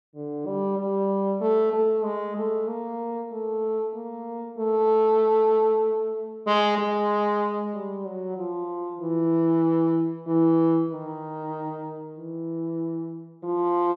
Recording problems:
none

